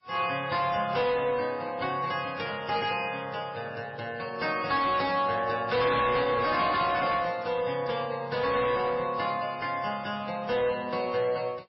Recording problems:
lossy codec; MP3, then AAC, log-spectral distance 3 dB, nothing above 5.3 kHz
distortion; hard clipping, signal-to-distortion ratio 11 dB

